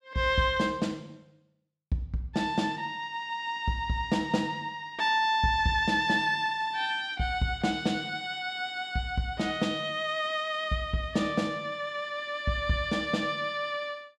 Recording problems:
none

